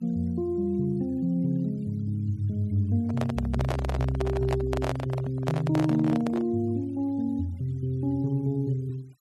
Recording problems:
denoising artefacts; signal-to-artefact ratio 27 dB
handling noise; from 3 to 6.5 s; peak 0 dB vs average level

